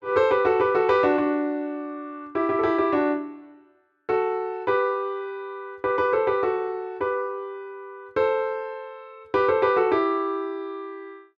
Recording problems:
none

